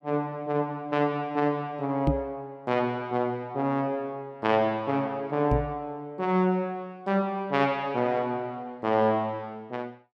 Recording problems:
knock on the microphone; at 2 s and at 5.5 s; peak +7 dB vs average level

